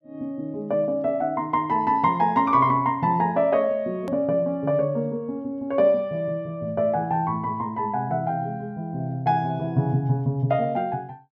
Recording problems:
click at an edit; at 4 s

